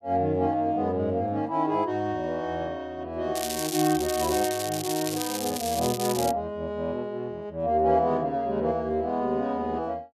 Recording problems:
crackle; from 3.5 to 6.5 s; loose cable, SNR 6 dB

